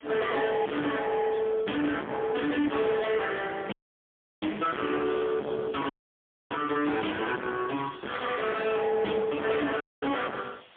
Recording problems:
phone line; 240 Hz to 3.3 kHz, AMR-NB, then MP3
distorted audio; soft clipping, signal-to-distortion ratio 2 dB
hiss; SNR 27 dB
dropout; at 3.5 s for 0.5 s, at 6 s for 0.5 s and at 10 s

